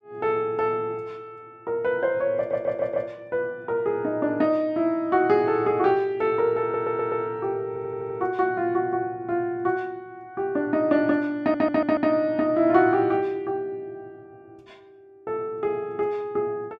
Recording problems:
stutter; 4 times, first at 2.5 s

